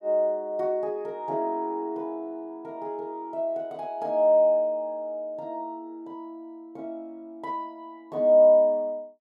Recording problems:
none

